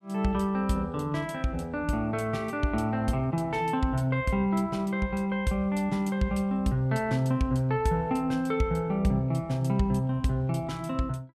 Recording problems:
none

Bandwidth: 15 kHz